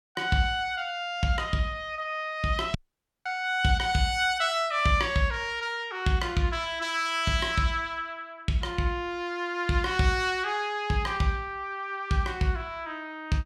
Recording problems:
dropout; at 3 s for 0.5 s

